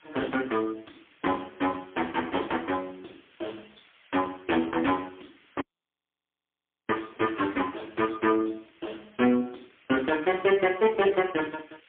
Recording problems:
phone line; 220 Hz to 3.3 kHz, AMR-NB, then MP3
background hiss; SNR 29 dB
dropout; at 5.5 s for 1.5 s

